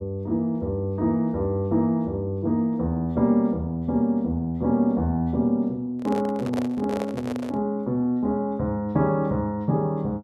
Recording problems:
handling noise; from 6 to 7.5 s; peak -2 dB vs average level

